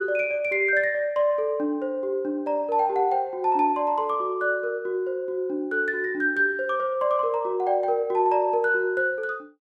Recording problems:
none

